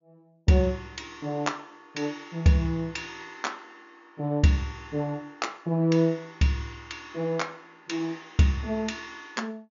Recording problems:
treble cut off; nothing above 7.1 kHz

